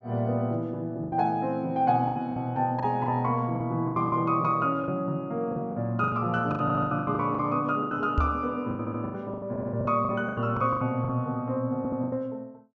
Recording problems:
low-pass filter; nothing above 8 kHz
packet loss; 14% of the sound replaced, filled with the last packet
audio stuttering; 4 times, first at 6.5 s
microphone thump; at 8 s; peak +5 dB vs average level

